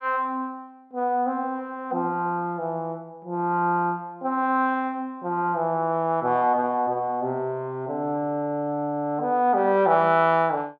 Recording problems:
none

